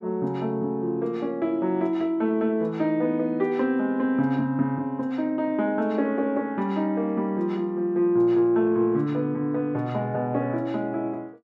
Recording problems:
none

